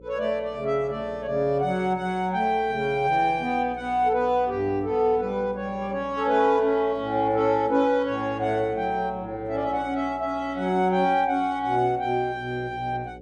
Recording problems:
mains hum; 60 Hz, harmonics up to 540 Hz, SNR 22 dB

